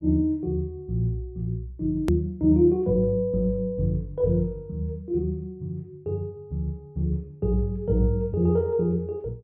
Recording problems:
click at an edit; at 2 s

